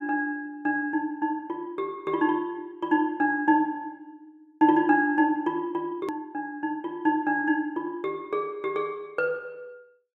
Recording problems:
click at an edit; at 6 s

